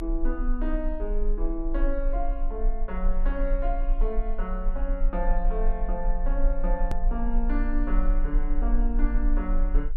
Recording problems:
low-frequency rumble; below 36 Hz, strongest tone 28 Hz, SNR -4 dB
edit click; at 7 s

